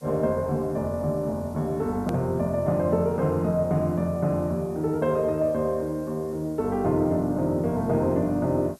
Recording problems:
background hiss; SNR 29 dB
hard cut with a click; at 2 s

